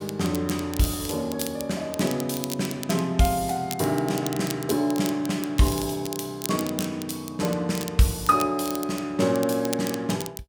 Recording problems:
crackling; vinyl, SNR 11 dB

